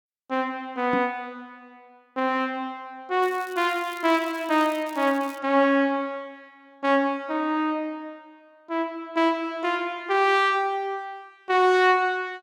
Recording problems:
microphone thump; at 1 s; peak -1 dB vs average level
crackling; from 3 to 5.5 s; loose cable, SNR 23 dB

